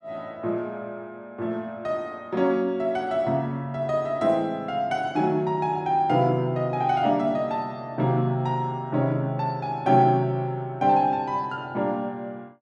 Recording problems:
none

